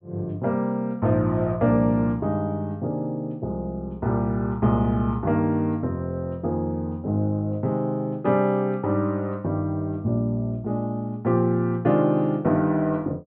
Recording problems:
treble missing; nothing above 4 kHz

